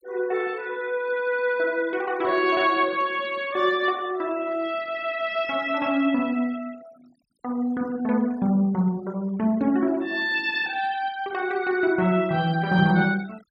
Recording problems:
denoising artefacts; signal-to-artefact ratio 24 dB

